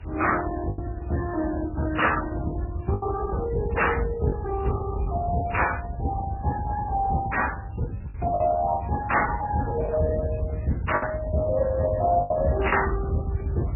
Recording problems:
codec artefacts; Speex, then MP3, log-spectral distance 3 dB, nothing above 2.9 kHz
background hiss; SNR 27 dB
rumble; below 120 Hz, SNR 7 dB
lost packets; 3% of the sound replaced, filled with the last packet

